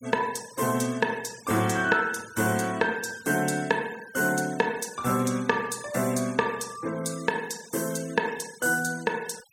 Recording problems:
noise reduction artefacts; signal-to-artefact ratio 19 dB

